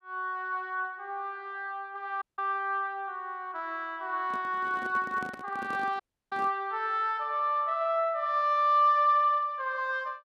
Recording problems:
dropout; at 2 s and at 6 s
handling noise; from 4 to 6.5 s; peak -8 dB vs average level

